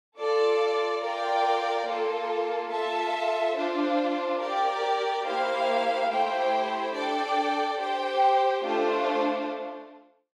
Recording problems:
none

